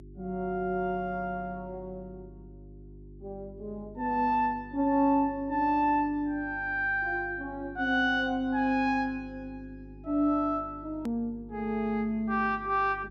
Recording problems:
hum; 50 Hz, harmonics up to 400 Hz, SNR 20 dB
edit click; at 11 s

